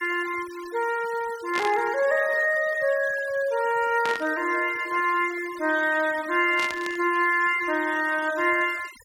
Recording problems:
denoising artefacts; signal-to-artefact ratio 19 dB
burst of static; at 1.5 s, at 4 s and at 6.5 s; peak -4 dB vs average level

